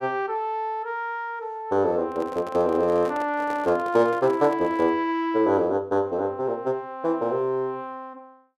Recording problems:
handling noise; from 2 to 5 s; peak -9 dB vs average level

